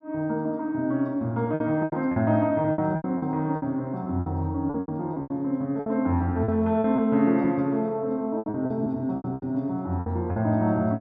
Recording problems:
lost packets; 12% of the sound replaced, filled with repeated pitch periods

